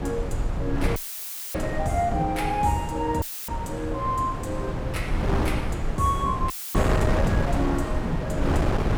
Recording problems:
low-frequency rumble; below 68 Hz, SNR 7 dB
wind noise; below 570 Hz, SNR 1 dB
dropout; at 1 s for 0.5 s, at 3 s and at 6.5 s; filled with static

